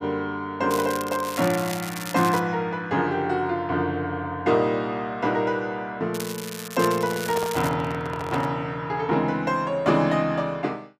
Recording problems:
crackling; from 0.5 to 2.5 s and from 6 to 7.5 s; loose cable, SNR 11 dB
handling noise; from 7 to 8.5 s; peak -2 dB vs average level

